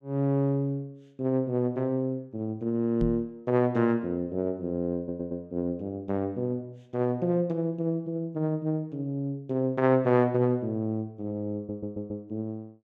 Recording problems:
microphone bump; at 3 s; peak +2 dB vs average level
audio stuttering; at 5 s and at 12 s

